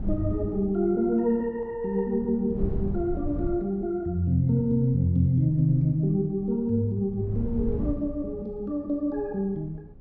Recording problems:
wind noise; below 140 Hz, SNR 11 dB

